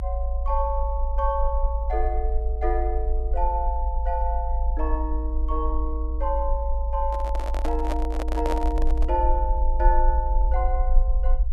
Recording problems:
low-frequency rumble; below 54 Hz, strongest tone 26 Hz, SNR -2 dB
handling noise; from 7 to 9 s; peak +3 dB vs average level

